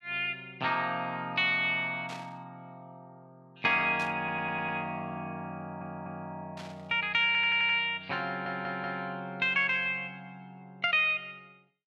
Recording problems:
static burst; at 2 s, at 4 s and at 6.5 s; peak -11 dB vs average level
stutter; 4 times, first at 4 s

